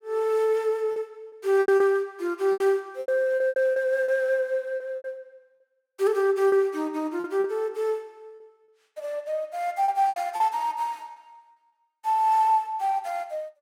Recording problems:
lost packets; 9% of the sound replaced, filled with repeated pitch periods

